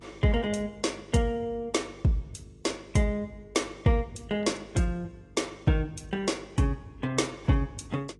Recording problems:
lossy compression; AAC, log-spectral distance 3 dB, nothing above 10.1 kHz
hum; 50 Hz, harmonics up to 450 Hz, SNR 25 dB

